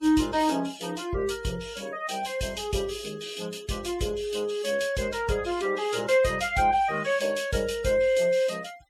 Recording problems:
denoising artefacts; signal-to-artefact ratio 23 dB

